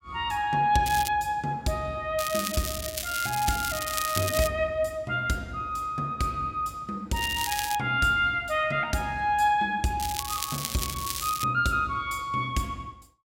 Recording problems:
crackling; 4 times, first at 1 s; loose cable, SNR 5 dB

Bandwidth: 16 kHz